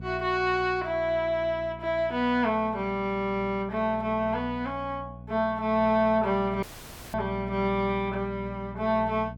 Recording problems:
mains hum; 60 Hz, harmonics up to 480 Hz, SNR 14 dB
dropout; at 6.5 s for 0.5 s

